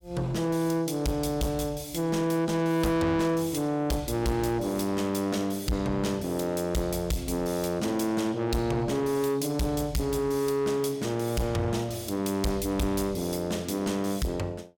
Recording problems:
distortion; soft clipping, signal-to-distortion ratio 6 dB

